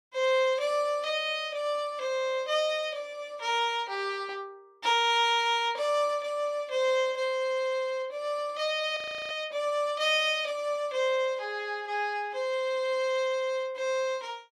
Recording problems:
frozen audio; at 9 s

